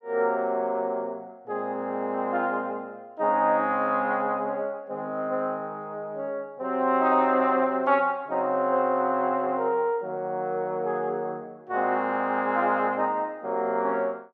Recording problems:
none

